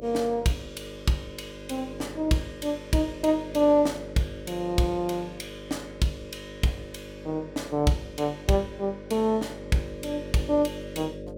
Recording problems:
hum; 50 Hz, harmonics up to 600 Hz, SNR 13 dB

